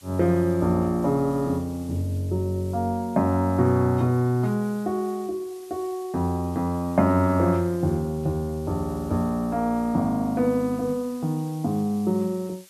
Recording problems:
hiss; slope +2 dB per octave, SNR 25 dB

